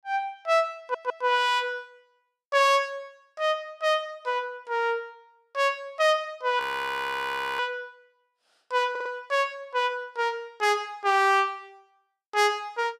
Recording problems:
audio stuttering; at 1 s and at 9 s
frozen audio; at 6.5 s for 1 s

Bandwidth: 15.5 kHz